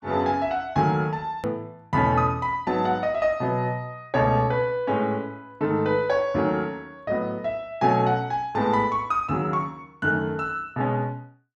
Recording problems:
edit click; at 1.5 s

